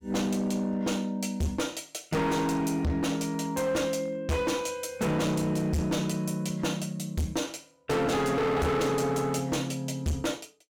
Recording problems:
distortion; hard clipping, uneven, signal-to-distortion ratio 6 dB

